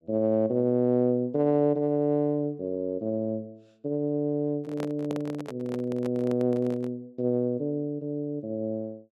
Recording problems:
handling noise; from 4.5 to 7 s; peak -4 dB vs average level

